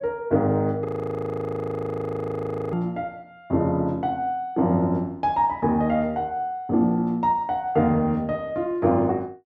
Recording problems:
audio freezing; at 1 s for 2 s

